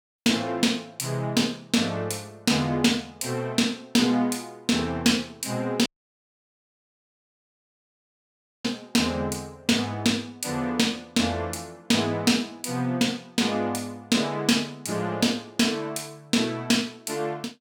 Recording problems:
audio cutting out; at 6 s for 3 s

